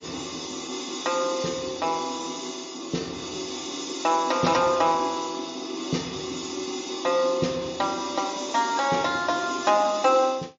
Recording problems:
lossy codec; MP3, log-spectral distance 6 dB, nothing above 7.1 kHz

